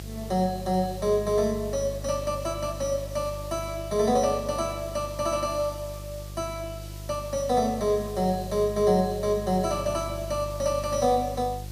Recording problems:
hum; 50 Hz, harmonics up to 700 Hz, SNR 12 dB
background hiss; SNR 19 dB

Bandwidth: 15 kHz